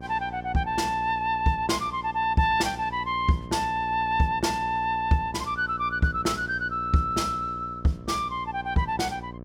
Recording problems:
hum; 60 Hz, harmonics up to 1.2 kHz, SNR 15 dB

